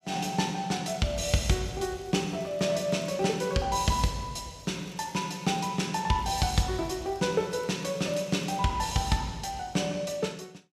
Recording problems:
crackle; from 1 to 3.5 s, from 4.5 to 5.5 s and from 6 to 8.5 s; loose cable, SNR 28 dB

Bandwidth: 14.5 kHz